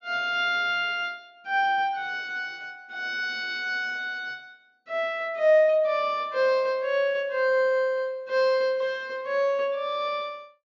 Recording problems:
treble cut off; nothing above 6.9 kHz

